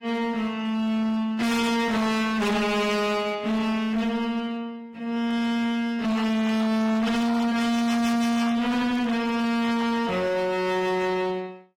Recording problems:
lossy codec; AAC, log-spectral distance 2 dB, nothing above 16.5 kHz
distortion; hard clipping, uneven, signal-to-distortion ratio 6 dB

